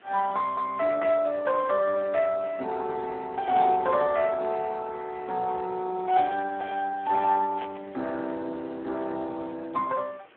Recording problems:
telephone audio; 220 Hz to 3 kHz, Speex
hiss; SNR 27 dB
burst of static; at 7.5 s; peak -4 dB vs average level

